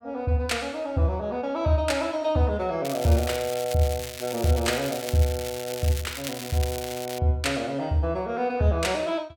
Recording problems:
crackling; from 3 to 7 s; loose cable, SNR 10 dB

